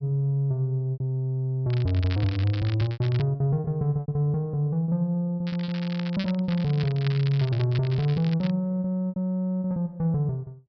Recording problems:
low-pass filter; nothing above 5.5 kHz
packet loss; 8% of the sound replaced, filled with repeated pitch periods
crackling; from 1.5 to 3 s and from 5.5 to 8.5 s; loose cable, SNR 16 dB

